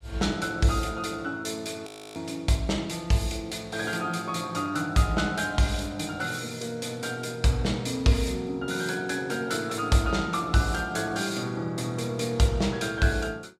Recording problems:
audio freezing; at 2 s

